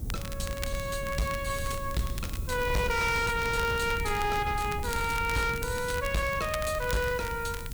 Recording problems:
distorted audio; hard clipping, signal-to-distortion ratio 11 dB
background hiss; slope +4 dB per octave, SNR 18 dB
rumble; below 130 Hz, SNR 8 dB
crackling; vinyl, SNR 14 dB

